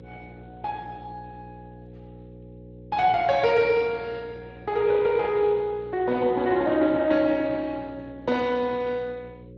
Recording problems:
codec artefacts; Speex, log-spectral distance 3 dB
hum; 60 Hz, harmonics up to 540 Hz, SNR 21 dB

